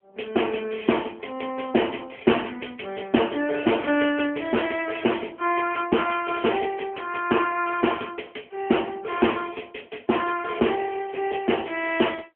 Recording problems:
telephone audio; 190 Hz to 3.3 kHz, AMR-NB

